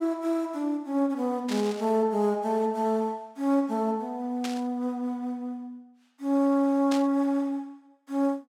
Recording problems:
burst of static; at 1.5 s, at 4.5 s and at 7 s; peak -4 dB vs average level

